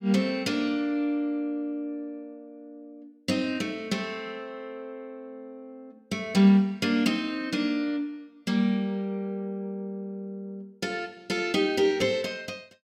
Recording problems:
microphone thump; at 12 s; peak -3 dB vs average level

